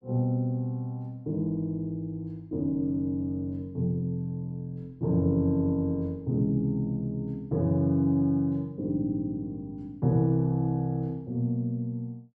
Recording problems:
none

